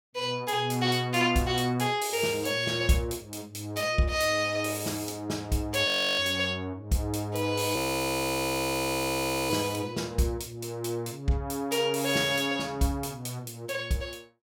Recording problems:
audio freezing; at 6 s and at 8 s for 1.5 s

